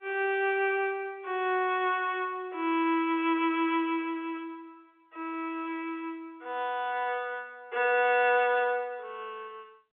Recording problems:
phone line; 280 Hz to 3.5 kHz, G.711

